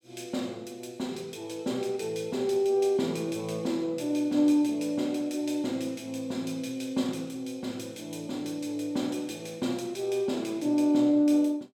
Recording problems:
none

